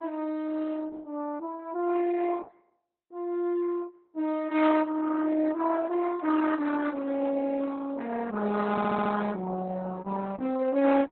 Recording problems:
lossy codec; Opus, log-spectral distance 3 dB, nothing above 4 kHz
stutter; at 8.5 s

